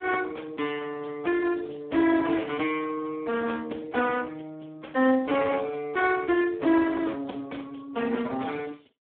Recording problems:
telephone audio; 220 Hz to 3.5 kHz, Speex

